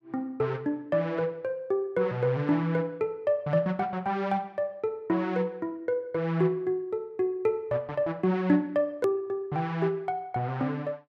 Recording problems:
hard cut with a click; at 9 s

